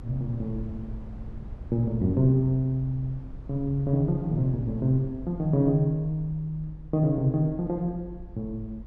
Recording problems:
low-frequency rumble; below 88 Hz, SNR 16 dB

